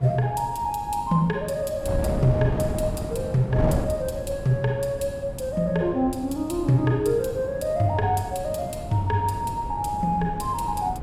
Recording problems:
wind on the microphone; below 300 Hz, SNR 8 dB

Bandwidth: 16 kHz